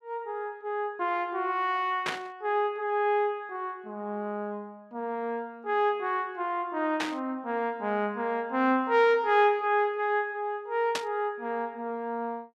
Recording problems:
burst of static; at 2 s, at 7 s and at 11 s; peak +2 dB vs average level

